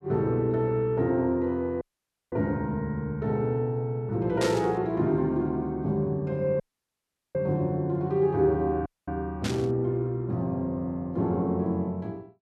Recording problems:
audio cutting out; at 2 s for 0.5 s, at 6.5 s for 1 s and at 9 s
burst of static; at 4.5 s and at 9.5 s; peak -1 dB vs average level

